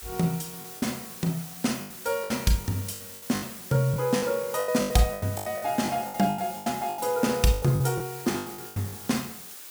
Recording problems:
background hiss; slope 0 dB per octave, SNR 12 dB
packet loss; 16% of the sound replaced, filled with the last packet

